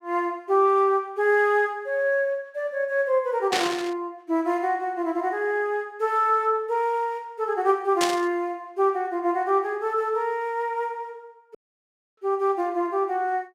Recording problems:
static burst; at 3.5 s and at 8 s; peak +3 dB vs average level
dropout; at 12 s for 0.5 s

